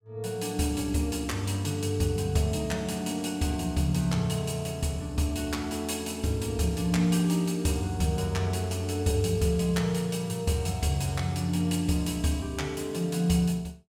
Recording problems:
none

